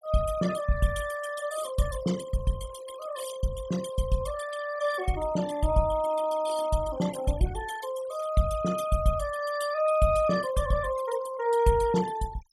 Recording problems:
denoising artefacts; signal-to-artefact ratio 14 dB

